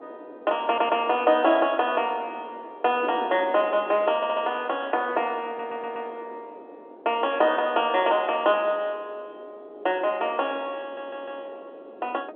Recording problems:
telephone audio; 280 Hz to 3.6 kHz, G.711
wind on the microphone; below 630 Hz, SNR 19 dB
stutter; 4 times, first at 0.5 s

